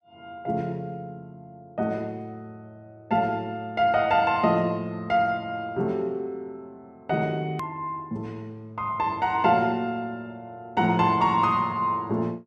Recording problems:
click at an edit; at 7.5 s

